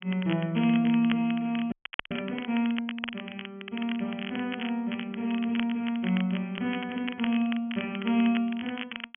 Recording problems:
low-pass filter; nothing above 3.3 kHz
crackle; vinyl, SNR 11 dB
audio freezing; at 1.5 s

